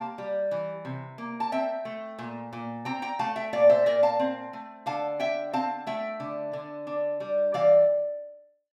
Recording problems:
none

